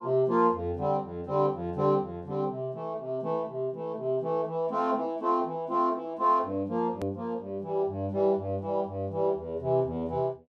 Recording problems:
edit click; at 7 s

